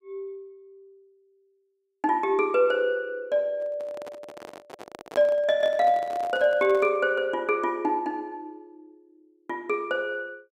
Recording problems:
handling noise; from 3.5 to 7 s; peak -6 dB vs average level

